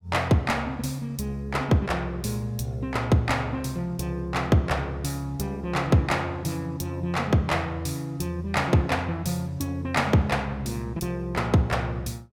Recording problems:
none

